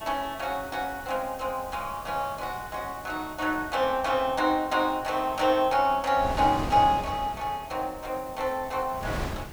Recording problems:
background hiss; slope +2 dB per octave, SNR 22 dB
wind noise; below 850 Hz, SNR 13 dB

